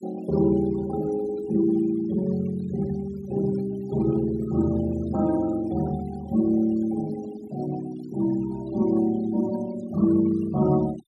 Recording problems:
noise reduction artefacts; signal-to-artefact ratio 20 dB

